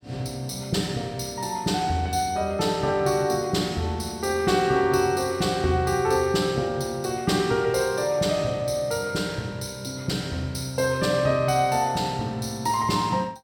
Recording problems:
none

